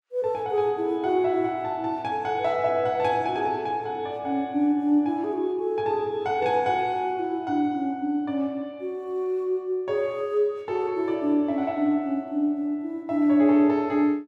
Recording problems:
none

